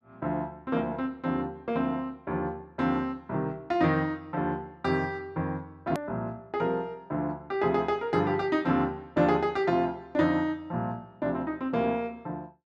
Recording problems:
hard cut with a click; at 6 s

